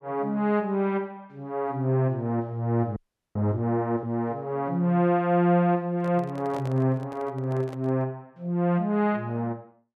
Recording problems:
frozen audio; at 3 s
microphone handling noise; from 6 to 8 s; peak -9 dB vs average level

